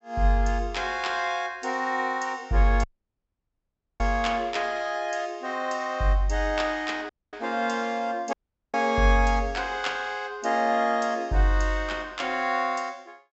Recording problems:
treble cut off; nothing above 7.8 kHz
dropout; at 3 s for 1 s, at 7 s and at 8.5 s

